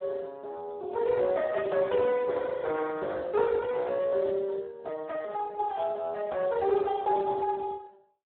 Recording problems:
telephone audio; 320 Hz to 2.5 kHz, Speex

